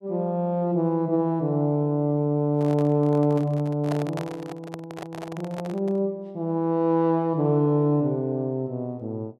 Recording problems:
microphone handling noise; from 2.5 to 6 s; peak -4 dB vs average level

